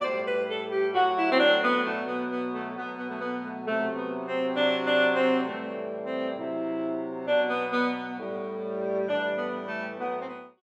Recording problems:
none

